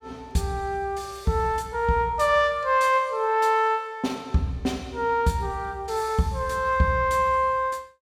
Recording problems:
none

